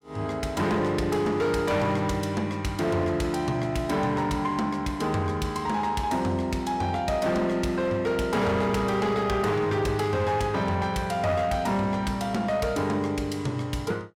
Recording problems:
distortion; hard clipping, signal-to-distortion ratio 12 dB

